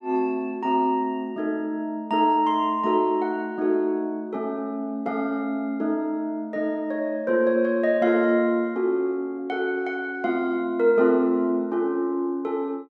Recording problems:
none

